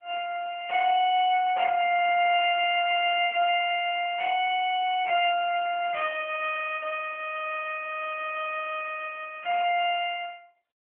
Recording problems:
telephone audio; 560 Hz to 3.1 kHz, AMR-NB

